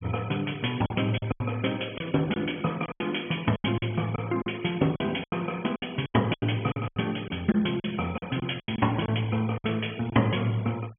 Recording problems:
treble missing; nothing above 3.4 kHz
denoising artefacts; signal-to-artefact ratio 22 dB
packet loss; 12% of the sound replaced, filled with silence

